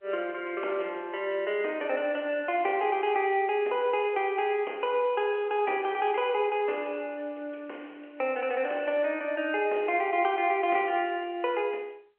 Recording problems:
phone line; 300 Hz to 3.1 kHz, G.711

